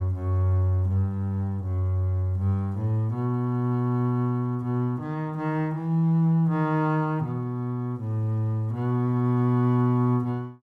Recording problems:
none

